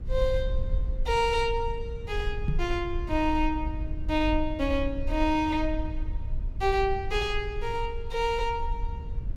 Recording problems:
low-frequency rumble; below 60 Hz, SNR 6 dB
microphone thump; at 2.5 s; peak +3 dB vs average level

